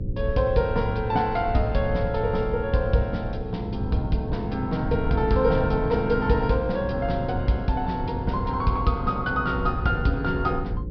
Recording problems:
treble missing; nothing above 5.5 kHz
hum; 60 Hz, harmonics up to 540 Hz, SNR 11 dB
rumble; below 100 Hz, SNR 8 dB

